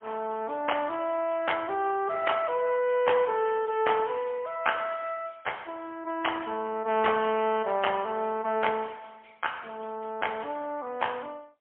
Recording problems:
telephone audio; 240 Hz to 3.3 kHz, AMR-NB, then MP3

